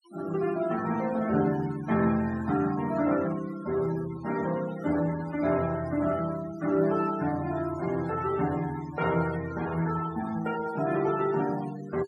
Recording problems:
denoising artefacts; signal-to-artefact ratio 15 dB

